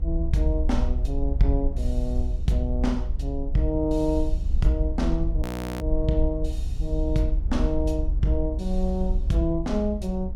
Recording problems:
mains hum; 60 Hz, harmonics up to 540 Hz, SNR 17 dB
rumble; below 62 Hz, SNR 1 dB
audio freezing; at 5.5 s

